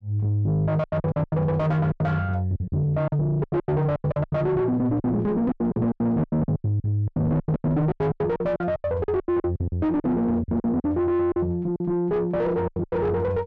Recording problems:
distorted audio; soft clipping, signal-to-distortion ratio 6 dB
packet loss; 19% of the sound replaced, filled with silence

